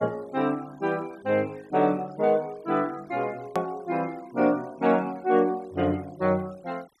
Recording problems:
denoising artefacts; signal-to-artefact ratio 26 dB
hard cut with a click; at 3.5 s

